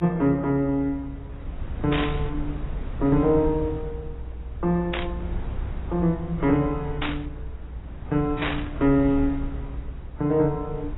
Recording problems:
codec artefacts; AAC, log-spectral distance 2 dB
low-frequency rumble; below 86 Hz, SNR 10 dB
burst of static; 4 times, first at 2 s; peak 0 dB vs average level

